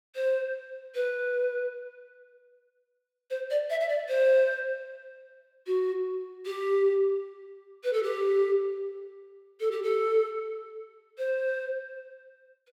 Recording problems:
none

